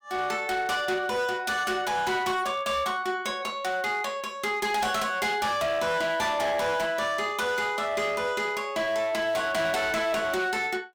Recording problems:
distorted audio; hard clipping, signal-to-distortion ratio 10 dB

